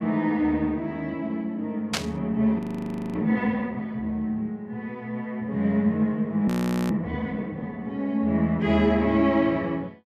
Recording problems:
static burst; at 2 s; peak +4 dB vs average level
frozen audio; at 2.5 s for 0.5 s and at 6.5 s

